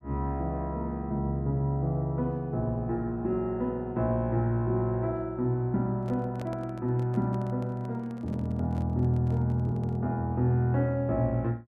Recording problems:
handling noise; from 6 to 10 s; peak -9 dB vs average level

